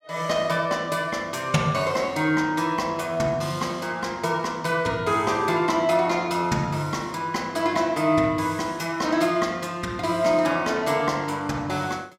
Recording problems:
none

